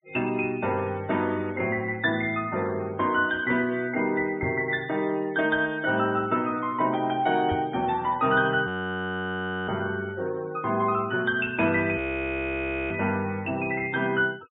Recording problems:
treble missing; nothing above 4 kHz
denoising artefacts; signal-to-artefact ratio 24 dB
microphone bump; at 4.5 s and at 7.5 s; peak -3 dB vs average level
audio freezing; at 8.5 s for 1 s and at 12 s for 1 s

